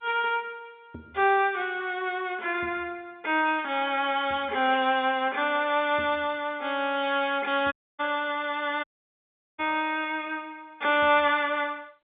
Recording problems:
phone line; 260 Hz to 3.6 kHz, G.711
audio cutting out; at 7.5 s and at 9 s for 0.5 s

